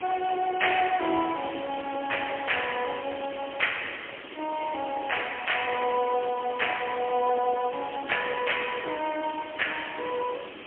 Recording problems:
phone line; 280 Hz to 3.2 kHz, AMR-NB, then MP3
background hiss; SNR 12 dB

